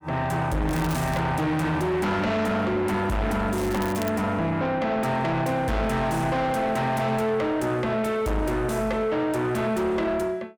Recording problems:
distortion; soft clipping, signal-to-distortion ratio 7 dB
crackling; at 0.5 s and at 3.5 s; loose cable, SNR 16 dB

